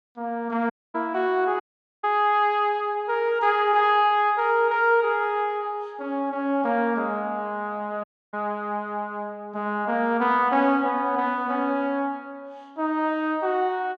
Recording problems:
audio cutting out; at 0.5 s, at 1.5 s and at 8 s

